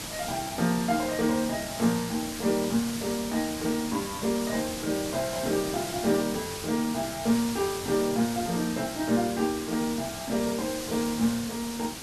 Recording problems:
hiss; slope -1 dB per octave, SNR 7 dB

